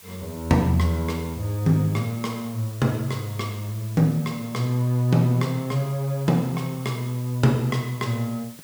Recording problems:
background hiss; slope +1 dB per octave, SNR 19 dB

